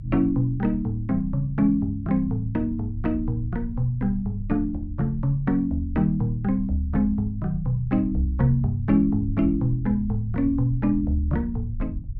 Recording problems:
low-frequency rumble; below 80 Hz, strongest tone 32 Hz, SNR 12 dB

